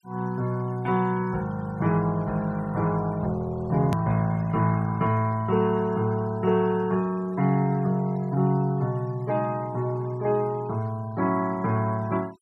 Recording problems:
noise reduction artefacts; signal-to-artefact ratio 24 dB
click at an edit; at 4 s

